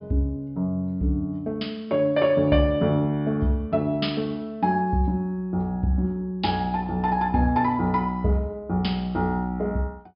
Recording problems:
treble cut off; nothing above 5.5 kHz

